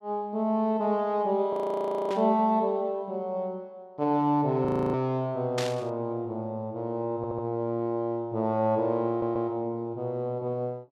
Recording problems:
audio freezing; at 1.5 s for 0.5 s and at 4.5 s
static burst; at 2 s and at 5.5 s; peak -1 dB vs average level
stutter; at 7 s and at 9 s

